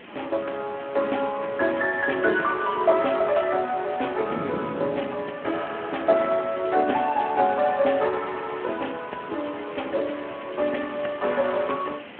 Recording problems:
phone line; 280 Hz to 3.1 kHz, Speex
background hiss; SNR 18 dB
wind noise; below 430 Hz, SNR 17 dB

